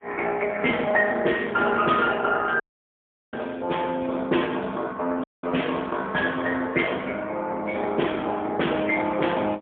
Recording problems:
phone line; 220 Hz to 3.4 kHz, AMR-NB, then MP3
audio cutting out; at 2.5 s for 0.5 s and at 5 s

